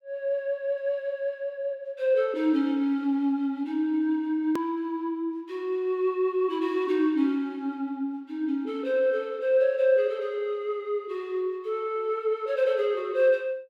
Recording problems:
hard cut with a click; at 4.5 s

